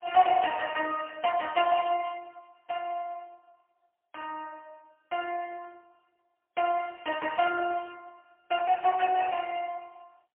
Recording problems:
telephone audio; 320 Hz to 3.1 kHz, AMR-NB, then MP3

